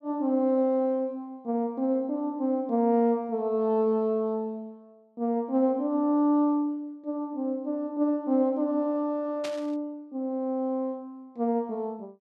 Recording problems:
static burst; at 9.5 s; peak -7 dB vs average level

